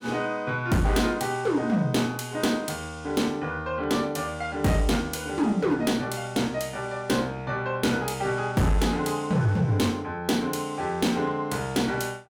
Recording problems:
distortion; hard clipping, signal-to-distortion ratio 12 dB

